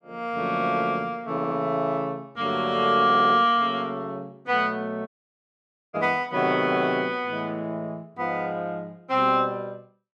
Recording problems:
audio stuttering; at 1.5 s and at 3 s
dropout; at 5 s for 1 s

